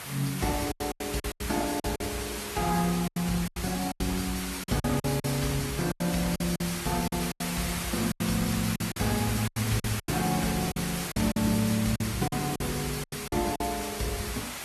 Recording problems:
codec artefacts; Opus, then Vorbis, log-spectral distance 11 dB, nothing above 12.7 kHz
background hiss; slope 0 dB per octave, SNR 5 dB
packet loss; 12% of the sound replaced, filled with silence

